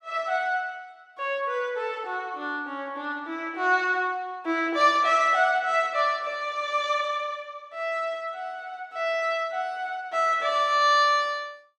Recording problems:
none

